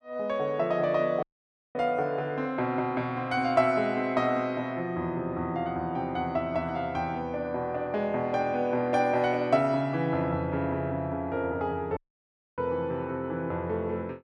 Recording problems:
dropout; at 1 s for 0.5 s and at 12 s for 0.5 s

